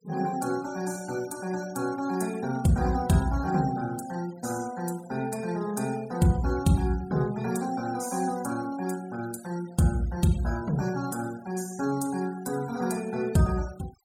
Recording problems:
denoising artefacts; signal-to-artefact ratio 18 dB

